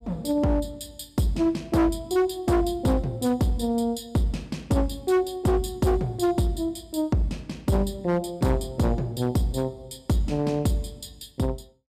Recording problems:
distortion; hard clipping, signal-to-distortion ratio 10 dB

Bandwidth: 14.5 kHz